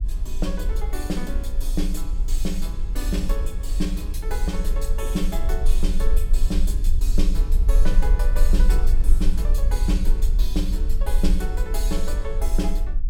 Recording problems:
rumble; below 42 Hz, strongest tone 24 Hz, SNR -6 dB

